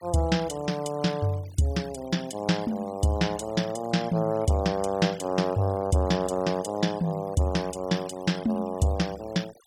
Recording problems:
denoising artefacts; signal-to-artefact ratio 21 dB

